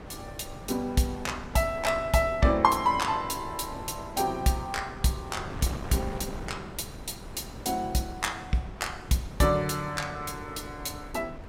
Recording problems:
wind on the microphone; below 580 Hz, SNR 13 dB

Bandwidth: 16.5 kHz